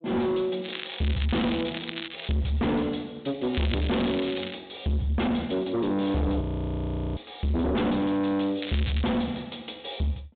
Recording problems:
treble cut off; nothing above 4 kHz
distortion; soft clipping, signal-to-distortion ratio 6 dB
crackling; from 0.5 to 2.5 s, from 3.5 to 4.5 s and at 8.5 s; loose cable, SNR 9 dB
frozen audio; at 6.5 s for 1 s

